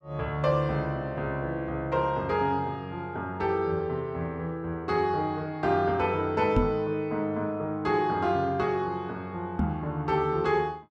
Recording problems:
microphone thump; at 6.5 s and at 9.5 s; peak +6 dB vs average level

